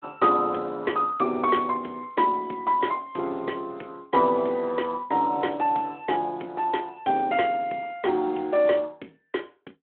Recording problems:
phone line; 240 Hz to 3.5 kHz, Speex

